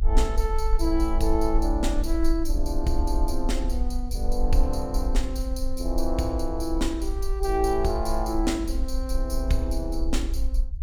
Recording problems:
rumble; below 52 Hz, strongest tone 20 Hz, SNR 1 dB

